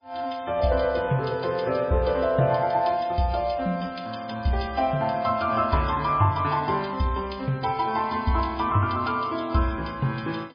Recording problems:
lossy codec; MP3, log-spectral distance 6 dB, nothing above 5 kHz

